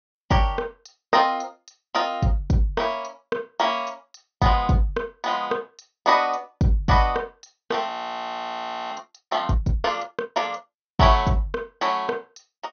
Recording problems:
treble missing; nothing above 6.4 kHz
audio freezing; at 8 s for 1 s

